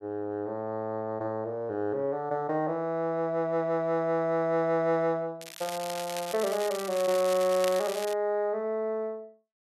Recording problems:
crackle; from 5.5 to 8 s; loose cable, SNR 10 dB

